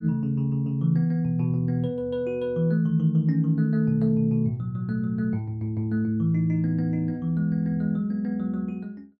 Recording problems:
none

